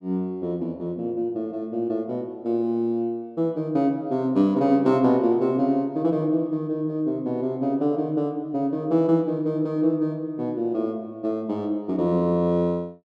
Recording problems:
none

